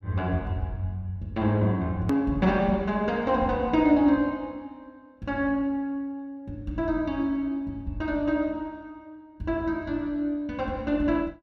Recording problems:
click at an edit; at 2 s

